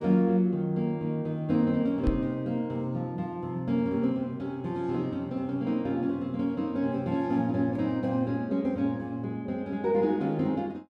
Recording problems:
microphone bump; at 2 s; peak +3 dB vs average level

